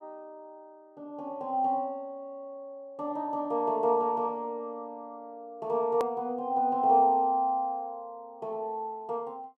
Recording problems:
click at an edit; at 6 s

